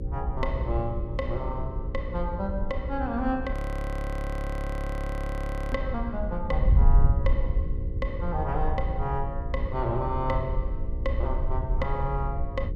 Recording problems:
hum; 60 Hz, harmonics up to 540 Hz, SNR 8 dB
wind noise; below 70 Hz, SNR -2 dB
audio freezing; at 3.5 s for 2 s

